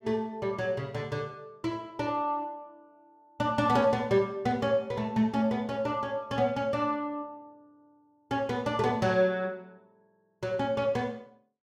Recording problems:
none

